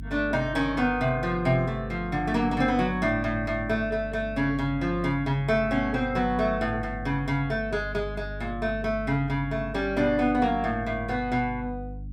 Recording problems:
electrical hum; 50 Hz, harmonics up to 300 Hz, SNR 12 dB

